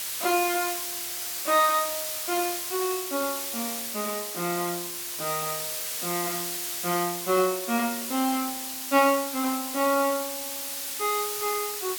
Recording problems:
background hiss; slope +3 dB per octave, SNR 3 dB

